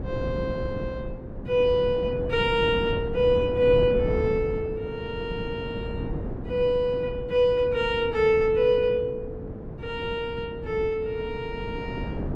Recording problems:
wind on the microphone; below 310 Hz, SNR 9 dB

